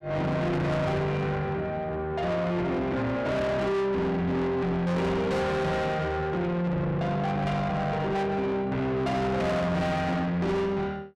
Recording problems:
distorted audio; soft clipping, signal-to-distortion ratio 7 dB

